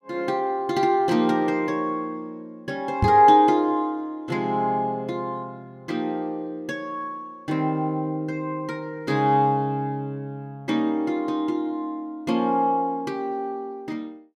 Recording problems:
knock on the microphone; at 3 s; peak +5 dB vs average level

